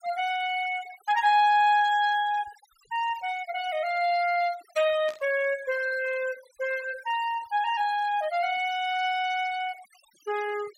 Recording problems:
noise reduction artefacts; signal-to-artefact ratio 19 dB
static burst; at 5 s; peak -13 dB vs average level

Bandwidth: 16 kHz